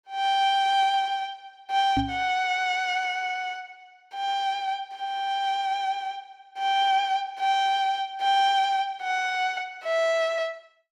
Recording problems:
microphone bump; at 2 s; peak +2 dB vs average level

